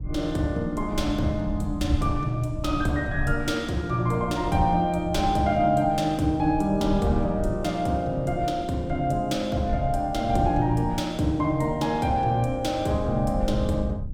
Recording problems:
low-frequency rumble; below 98 Hz, SNR 10 dB

